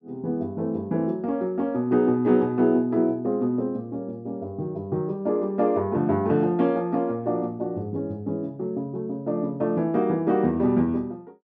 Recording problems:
none

